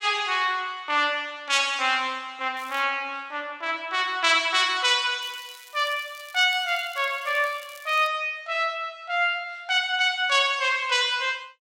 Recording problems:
crackling; at 2.5 s and from 5 to 8 s; loose cable, SNR 23 dB

